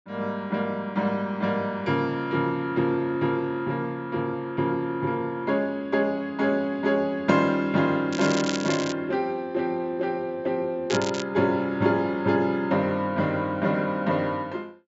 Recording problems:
treble cut off; nothing above 8 kHz
crackling; at 8 s and at 11 s; loose cable, SNR 9 dB

